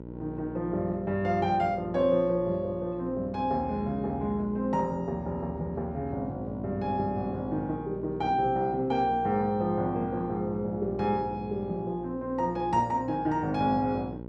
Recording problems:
hum; 60 Hz, harmonics up to 1.1 kHz, SNR 12 dB

